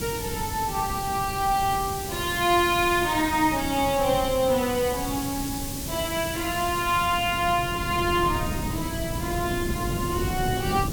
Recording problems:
hiss; slope +4 dB per octave, SNR 10 dB
wind noise; below 250 Hz, SNR 9 dB

